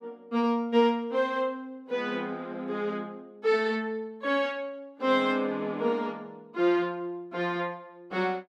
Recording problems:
none

